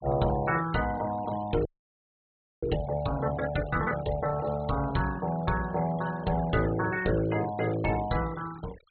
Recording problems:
low-pass filter; nothing above 4.2 kHz
noise reduction artefacts; signal-to-artefact ratio 17 dB
frozen audio; at 1.5 s for 1 s

